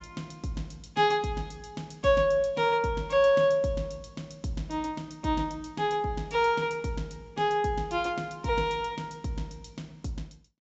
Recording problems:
treble missing; nothing above 7.6 kHz

